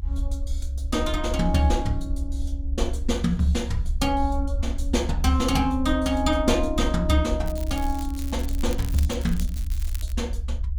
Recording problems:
low-frequency rumble; below 68 Hz, SNR 4 dB
crackling; from 7.5 to 10 s; loose cable, SNR 16 dB

